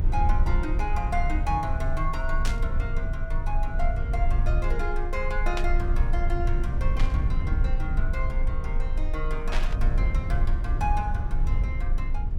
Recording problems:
rumble; below 60 Hz, strongest tone 24 Hz, SNR -5 dB
static burst; 4 times, first at 2.5 s; peak +4 dB vs average level

